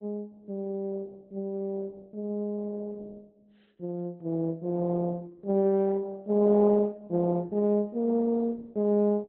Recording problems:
lossy compression; Opus, log-spectral distance 2 dB

